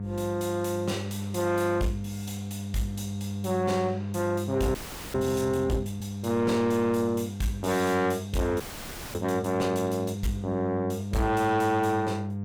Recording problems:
distorted audio; soft clipping, signal-to-distortion ratio 11 dB
electrical hum; 50 Hz, harmonics up to 700 Hz, SNR 7 dB
frozen audio; at 5 s and at 8.5 s for 0.5 s

